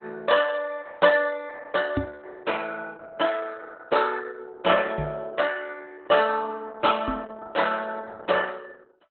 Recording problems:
lossy codec; Opus, log-spectral distance 5 dB, nothing above 4 kHz
microphone bump; at 2 s, at 5 s and at 7 s; peak +2 dB vs average level

